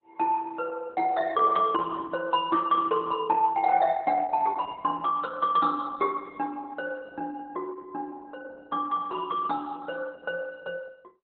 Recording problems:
lossy codec; Opus, log-spectral distance 3 dB, nothing above 3.7 kHz

